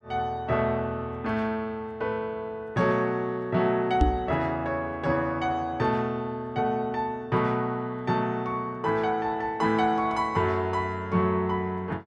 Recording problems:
microphone bump; at 4 s; peak +8 dB vs average level

